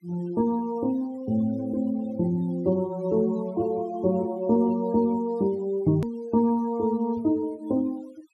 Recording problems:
noise reduction artefacts; signal-to-artefact ratio 25 dB
edit click; at 6 s

